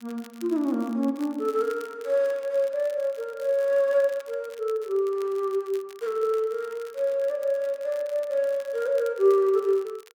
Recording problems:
crackle; vinyl, SNR 25 dB

